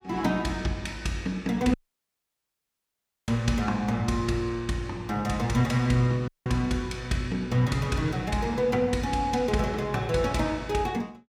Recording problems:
audio cutting out; at 1.5 s for 1.5 s and at 6.5 s

